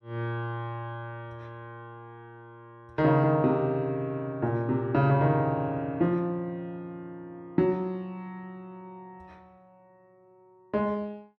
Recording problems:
none

